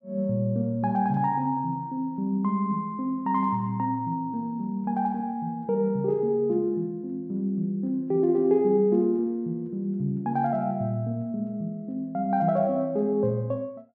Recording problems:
none

